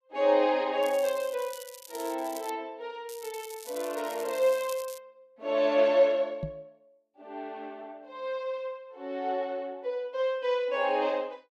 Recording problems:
crackle; from 1 to 2.5 s and from 3 to 5 s; loose cable, SNR 16 dB
microphone thump; at 6.5 s; peak -2 dB vs average level

